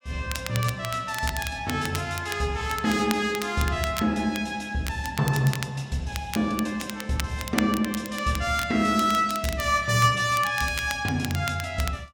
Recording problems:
crackle; vinyl, SNR 11 dB

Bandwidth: 17 kHz